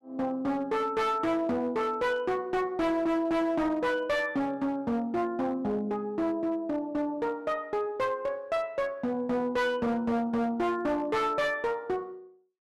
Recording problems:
distorted audio; hard clipping, signal-to-distortion ratio 10 dB

